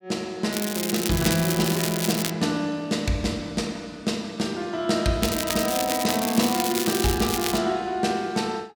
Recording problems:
crackling; from 0.5 to 2.5 s and from 5 to 7.5 s; loose cable, SNR 3 dB

